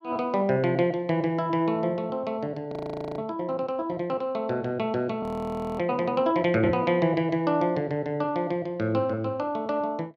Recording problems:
audio freezing; at 2.5 s and at 5 s for 0.5 s

